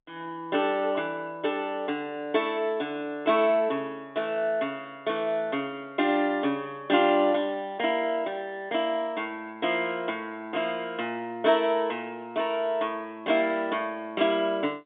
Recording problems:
phone line; 220 Hz to 3.7 kHz, G.711

